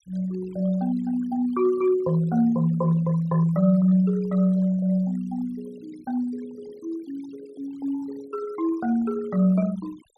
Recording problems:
denoising artefacts; signal-to-artefact ratio 23 dB

